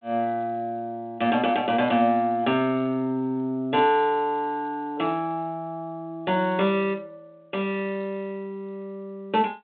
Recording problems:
phone line; 220 Hz to 3.5 kHz, G.726

